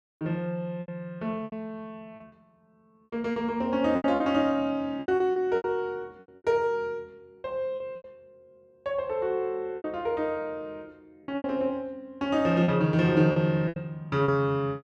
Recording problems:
lost packets; 9% of the sound replaced, filled with repeated pitch periods

